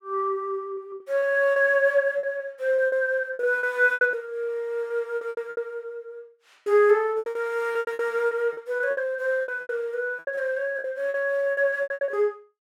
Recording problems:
lost packets; 16% of the sound replaced, filled with repeated pitch periods

